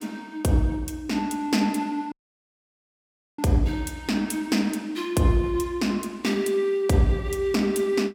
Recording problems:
dropout; at 2 s for 1.5 s

